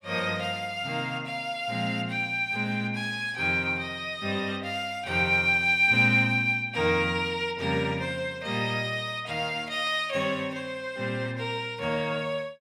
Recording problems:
none

